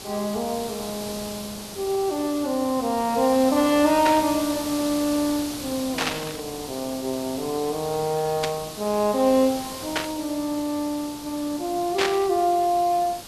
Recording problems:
hiss; SNR 11 dB
burst of static; 5 times, first at 4 s; peak +4 dB vs average level

